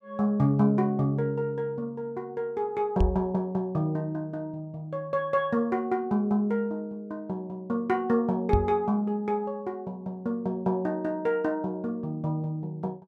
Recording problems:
microphone bump; at 3 s and at 8.5 s; peak +7 dB vs average level

